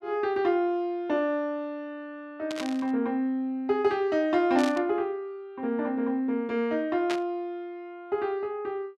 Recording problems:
static burst; at 2.5 s, at 4.5 s and at 7 s; peak -2 dB vs average level

